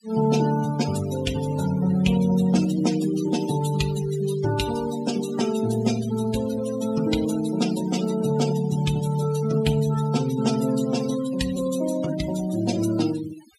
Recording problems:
denoising artefacts; signal-to-artefact ratio 12 dB

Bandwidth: 15.5 kHz